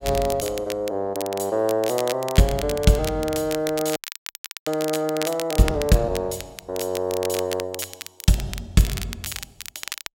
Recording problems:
crackling; vinyl, SNR 11 dB
frozen audio; at 4 s for 0.5 s

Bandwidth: 16 kHz